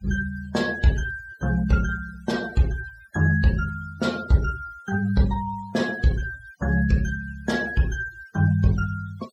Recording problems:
denoising artefacts; signal-to-artefact ratio 19 dB

